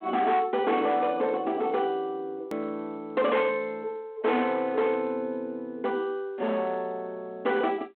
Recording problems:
phone line; 240 Hz to 3.6 kHz, G.726
distortion; hard clipping, uneven, signal-to-distortion ratio 11 dB
click at an edit; at 2.5 s

